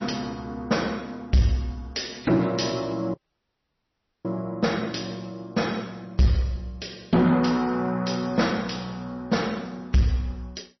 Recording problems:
lossy codec; MP3, log-spectral distance 4 dB, nothing above 5.8 kHz
distorted audio; soft clipping, signal-to-distortion ratio 11 dB
dropout; at 3 s for 1 s

